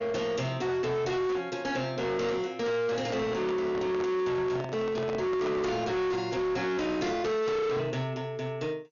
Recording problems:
lossy codec; MP2, log-spectral distance 2 dB, nothing above 6.7 kHz
distortion; hard clipping, signal-to-distortion ratio 8 dB
microphone handling noise; from 3 to 6 s; peak -3 dB vs average level

